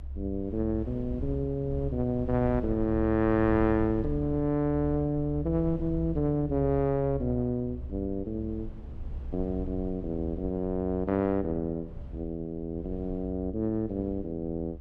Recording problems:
low-frequency rumble; below 70 Hz, strongest tone 68 Hz, SNR 10 dB

